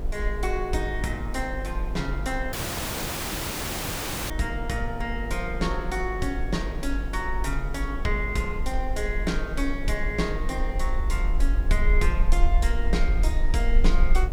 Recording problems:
electrical hum; 50 Hz, harmonics up to 500 Hz, SNR 10 dB
hiss; SNR 16 dB
low-frequency rumble; below 48 Hz, strongest tone 24 Hz, SNR -1 dB
audio cutting out; at 2.5 s for 2 s

